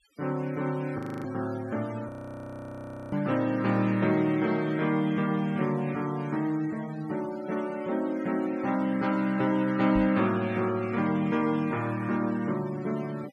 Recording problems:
noise reduction artefacts; signal-to-artefact ratio 20 dB
audio freezing; at 1 s and at 2 s for 1 s
microphone thump; at 10 s; peak -3 dB vs average level

